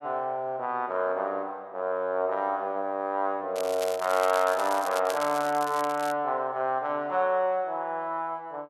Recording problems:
crackle; from 3.5 to 6 s; loose cable, SNR 13 dB

